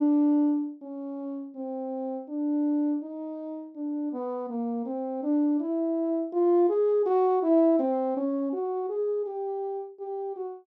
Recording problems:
none

